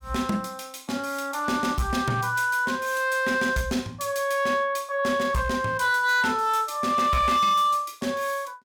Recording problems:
distortion; hard clipping, signal-to-distortion ratio 11 dB

